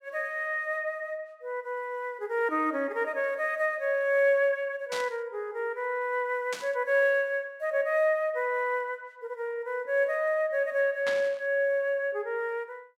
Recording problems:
static burst; at 5 s, at 6.5 s and at 11 s; peak -3 dB vs average level

